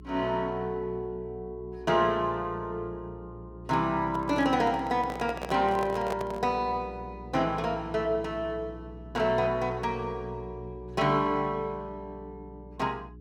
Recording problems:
electrical hum; 60 Hz, harmonics up to 420 Hz, SNR 17 dB
microphone handling noise; from 4 to 6.5 s; peak -2 dB vs average level

